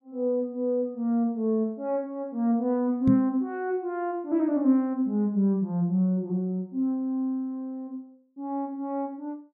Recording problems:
knock on the microphone; at 3 s; peak +6 dB vs average level

